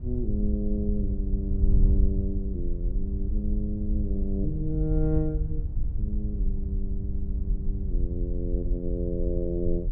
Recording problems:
wind noise; below 66 Hz, SNR -3 dB

